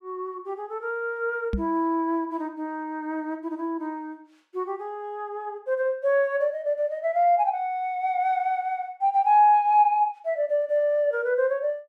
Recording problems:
microphone thump; at 1.5 s; peak +1 dB vs average level

